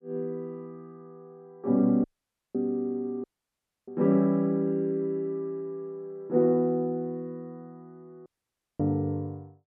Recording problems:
audio cutting out; at 2 s for 0.5 s, at 3 s for 0.5 s and at 8.5 s for 0.5 s

